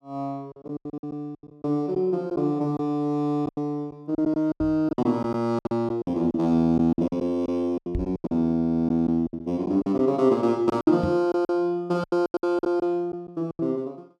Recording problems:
packet loss; 14% of the sound replaced, filled with silence
microphone thump; at 4.5 s, at 8 s and at 11 s; peak 0 dB vs average level

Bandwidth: 13 kHz